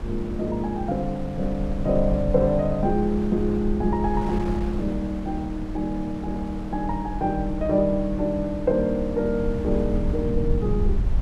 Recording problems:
rumble; below 78 Hz, SNR 7 dB
wind noise; below 590 Hz, SNR 13 dB

